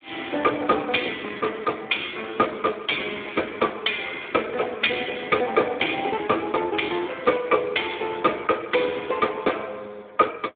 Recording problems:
telephone audio; 260 Hz to 3.6 kHz, Speex

